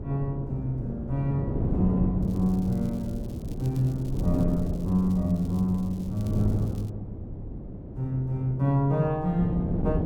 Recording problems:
wind noise; below 250 Hz, SNR 5 dB
crackling; from 2 to 7 s; loose cable, SNR 26 dB

